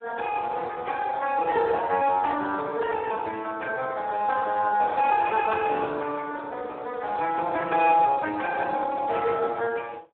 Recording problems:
telephone audio; 240 Hz to 3.3 kHz, Speex

